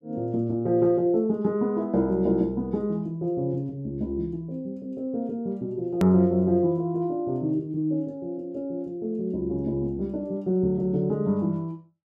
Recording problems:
click at an edit; at 6 s

